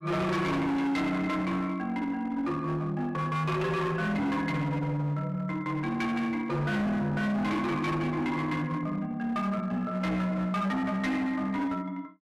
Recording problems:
distorted audio; hard clipping, uneven, signal-to-distortion ratio 8 dB

